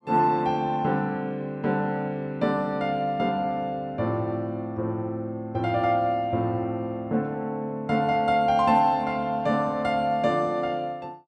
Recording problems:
none

